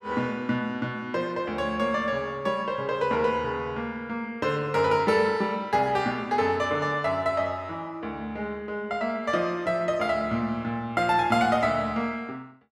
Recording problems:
none

